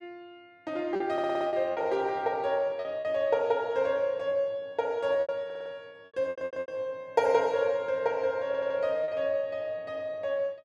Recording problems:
lost packets; 5% of the sound replaced, filled with repeated pitch periods
stutter; 4 times, first at 1 s

